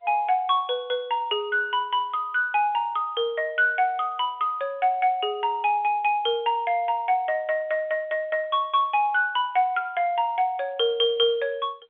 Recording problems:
telephone audio; 300 Hz to 3.5 kHz, G.711

